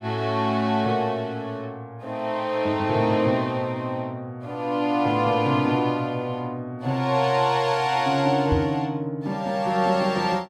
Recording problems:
knock on the microphone; at 8.5 s; peak +3 dB vs average level

